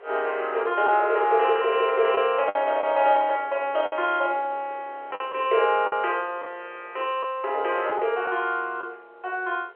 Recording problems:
telephone audio; 340 Hz to 3.3 kHz, G.711
wind on the microphone; below 1.2 kHz, SNR 23 dB
lost packets; 4% of the sound replaced, filled with the last packet

